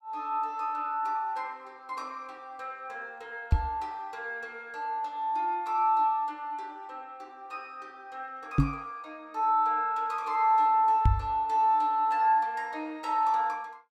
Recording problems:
microphone bump; at 3.5 s, at 8.5 s and at 11 s; peak +9 dB vs average level

